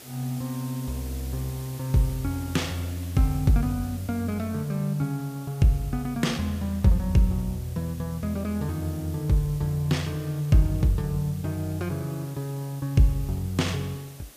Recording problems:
hiss; SNR 19 dB

